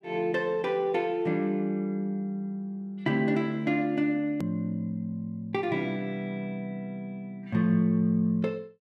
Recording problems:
click at an edit; at 4.5 s

